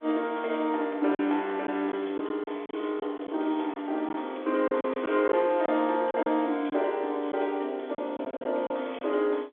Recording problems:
phone line; 260 Hz to 3.5 kHz, G.711
packet loss; 7% of the sound replaced, filled with silence

